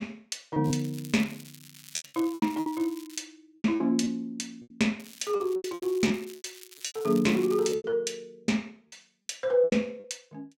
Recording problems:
lost packets; 14% of the sound replaced, filled with repeated pitch periods
crackling; from 0.5 to 3 s and from 5 to 8 s; loose cable, SNR 19 dB

